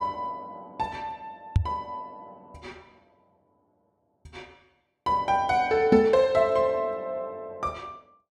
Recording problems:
knock on the microphone; at 1.5 s and at 6 s; peak +8 dB vs average level

